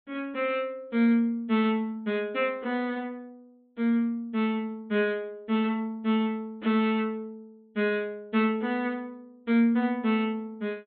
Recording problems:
low-pass filter; nothing above 4 kHz

